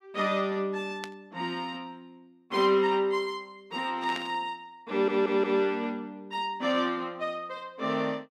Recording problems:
burst of static; at 1 s and at 4 s; peak -5 dB vs average level
audio stuttering; at 5 s

